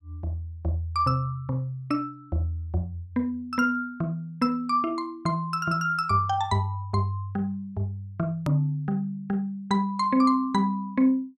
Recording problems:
edit click; at 8.5 s

